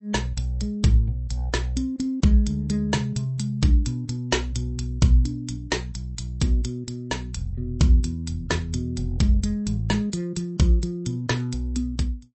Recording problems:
lossy codec; MP3, log-spectral distance 2 dB, nothing above 8 kHz

